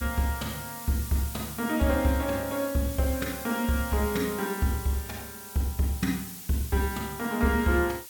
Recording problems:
hiss; SNR 10 dB

